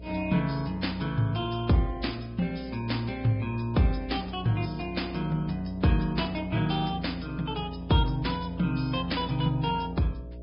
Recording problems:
low-pass filter; nothing above 5.2 kHz
lossy compression; Vorbis, log-spectral distance 4 dB
hum; 60 Hz, harmonics up to 660 Hz, SNR 14 dB

